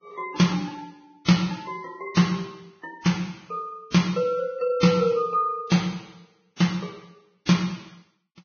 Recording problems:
lossy codec; Vorbis, log-spectral distance 4 dB, nothing above 6.5 kHz

